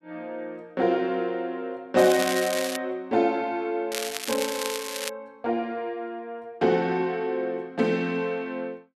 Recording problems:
crackling; at 2 s and from 4 to 5 s; loose cable, SNR 5 dB

